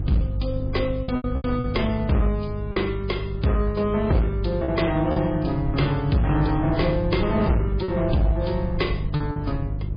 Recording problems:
lossy codec; MP3, log-spectral distance 3 dB
distorted audio; hard clipping, uneven, signal-to-distortion ratio 10 dB
hum; 50 Hz, harmonics up to 500 Hz, SNR 7 dB
low-frequency rumble; below 96 Hz, SNR 10 dB
lost packets; 5% of the sound replaced, filled with repeated pitch periods

